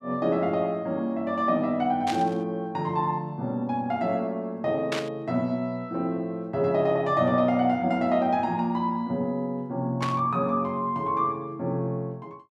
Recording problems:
static burst; at 2 s, at 5 s and at 10 s; peak 0 dB vs average level

